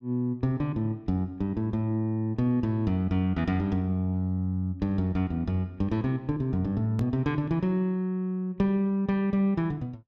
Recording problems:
hard cut with a click; at 7 s

